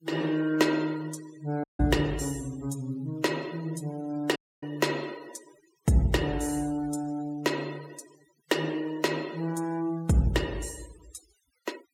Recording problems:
noise reduction artefacts; signal-to-artefact ratio 21 dB
audio cutting out; at 1.5 s and at 4.5 s

